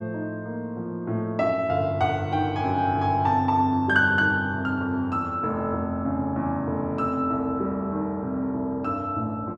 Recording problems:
none

